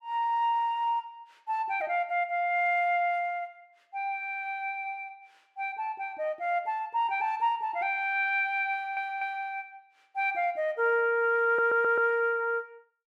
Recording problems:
stutter; at 8.5 s and at 11 s

